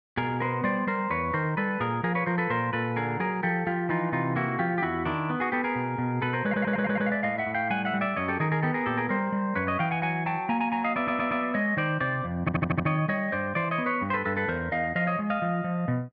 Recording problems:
audio stuttering; at 6.5 s, at 11 s and at 12 s

